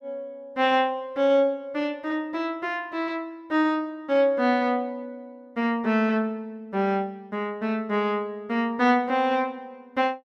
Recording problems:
none

